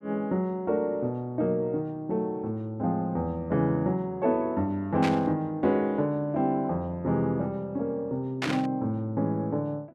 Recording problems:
burst of static; at 5 s and at 8.5 s; peak +2 dB vs average level

